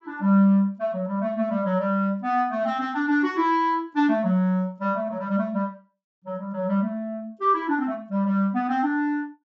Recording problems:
treble missing; nothing above 8 kHz

